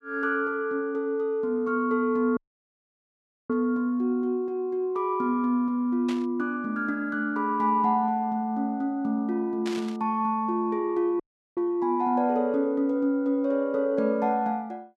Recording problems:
dropout; at 2.5 s for 1 s and at 11 s
static burst; at 6 s and at 9.5 s; peak -7 dB vs average level

